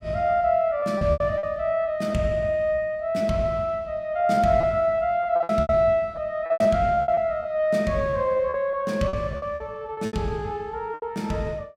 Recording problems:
packet loss; 11% of the sound replaced, filled with repeated pitch periods

